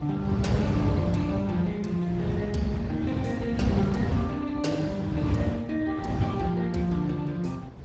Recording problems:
lossy codec; Speex, log-spectral distance 3 dB, nothing above 7.3 kHz
wind on the microphone; below 240 Hz, SNR 1 dB

